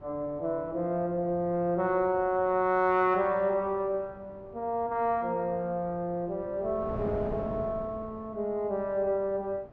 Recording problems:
wind noise; below 530 Hz, SNR 17 dB

